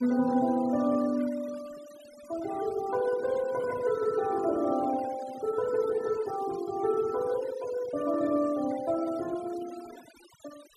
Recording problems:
noise reduction artefacts; signal-to-artefact ratio 19 dB

